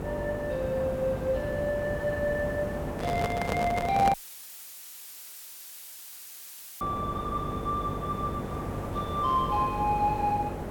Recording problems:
hum; 50 Hz, harmonics up to 600 Hz, SNR 10 dB
hiss; SNR 7 dB
handling noise; from 3 to 4 s; peak +3 dB vs average level
audio cutting out; at 4 s for 2.5 s; filled with static

